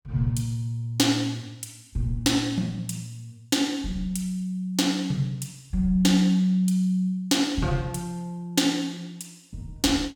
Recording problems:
none

